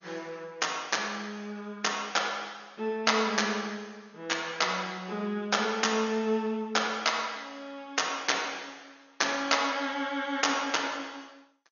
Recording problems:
lossy compression; MP2, then MP3, log-spectral distance 6 dB, nothing above 6.7 kHz

